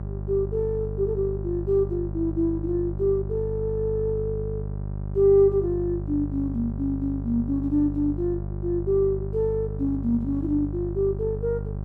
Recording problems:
hum; 50 Hz, harmonics up to 600 Hz, SNR 7 dB

